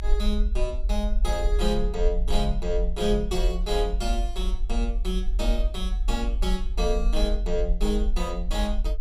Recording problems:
low-frequency rumble; below 44 Hz, strongest tone 40 Hz, SNR -1 dB

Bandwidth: 15 kHz